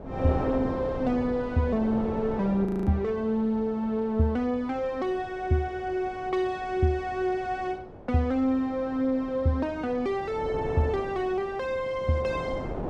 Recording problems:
wind on the microphone; below 620 Hz, SNR 11 dB
frozen audio; at 2.5 s

